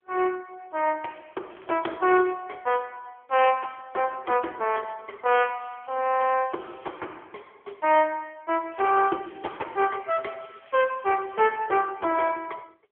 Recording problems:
telephone audio; 300 Hz to 3.2 kHz, AMR-NB
crackling; 4 times, first at 1.5 s; loose cable, SNR 28 dB

